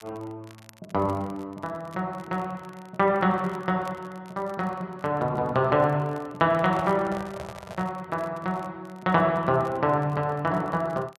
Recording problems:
crackle; vinyl, SNR 29 dB
microphone handling noise; from 6.5 to 8 s; peak -7 dB vs average level

